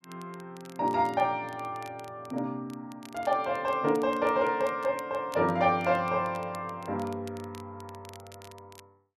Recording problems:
crackle; vinyl, SNR 25 dB

